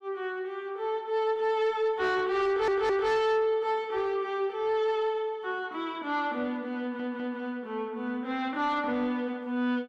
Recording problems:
distorted audio; soft clipping, signal-to-distortion ratio 11 dB
stutter; at 2.5 s and at 7 s

